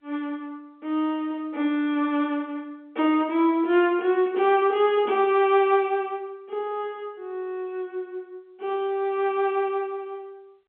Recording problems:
phone line; 220 Hz to 3.5 kHz, G.711

